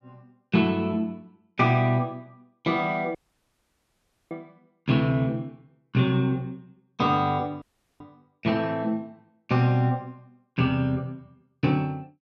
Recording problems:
audio cutting out; at 3 s for 1 s and at 7.5 s

